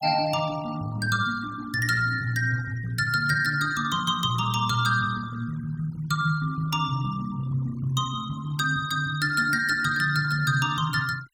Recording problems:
noise reduction artefacts; signal-to-artefact ratio 21 dB

